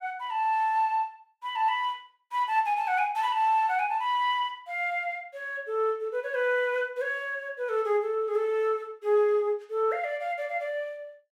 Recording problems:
none

